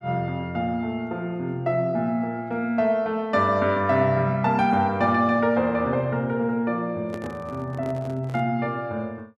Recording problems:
microphone handling noise; from 7 to 8.5 s; peak -8 dB vs average level

